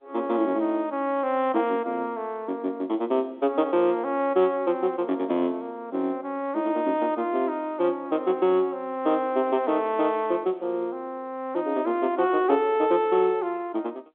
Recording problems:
telephone audio; 240 Hz to 3.6 kHz, G.711

